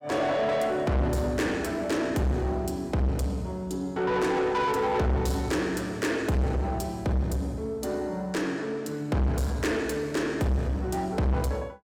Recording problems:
distortion; soft clipping, signal-to-distortion ratio 7 dB

